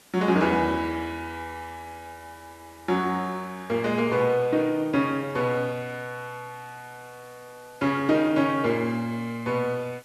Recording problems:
background hiss; slope -2 dB per octave, SNR 27 dB

